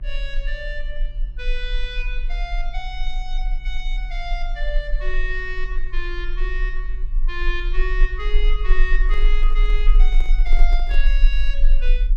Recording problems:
hum; 60 Hz, harmonics up to 600 Hz, SNR 17 dB
low-frequency rumble; below 32 Hz, strongest tone 22 Hz, SNR -7 dB
handling noise; from 9 to 11 s; peak -5 dB vs average level

